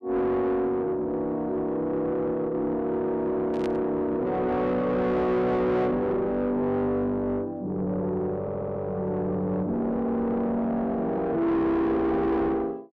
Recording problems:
distorted audio; soft clipping, signal-to-distortion ratio 7 dB
burst of static; at 3.5 s; peak -10 dB vs average level
stutter; at 8.5 s

